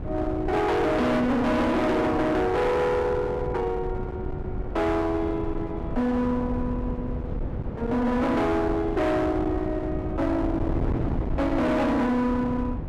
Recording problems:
distorted audio; hard clipping, uneven, signal-to-distortion ratio 6 dB
wind noise; below 330 Hz, SNR 7 dB

